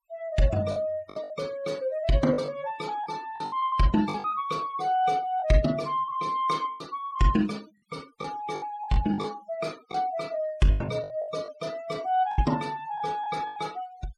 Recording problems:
denoising artefacts; signal-to-artefact ratio 21 dB
lost packets; 9% of the sound replaced, filled with the last packet

